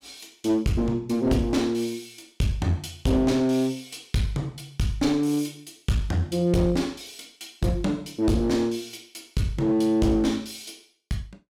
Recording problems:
distorted audio; hard clipping, uneven, signal-to-distortion ratio 10 dB

